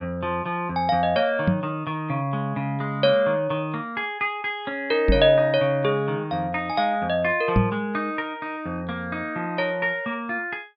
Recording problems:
treble missing; nothing above 5.5 kHz
microphone thump; at 1.5 s, at 5 s and at 7.5 s; peak +7 dB vs average level

